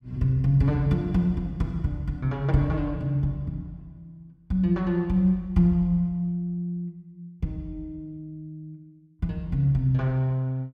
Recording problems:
none

